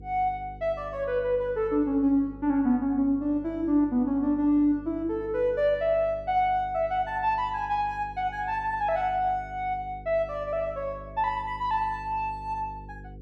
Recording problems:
electrical hum; 50 Hz, harmonics up to 500 Hz, SNR 19 dB

